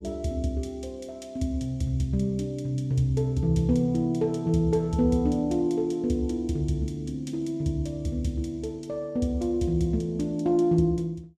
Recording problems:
none

